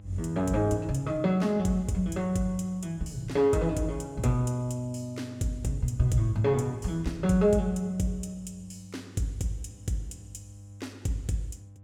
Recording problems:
electrical hum; 50 Hz, harmonics up to 500 Hz, SNR 20 dB

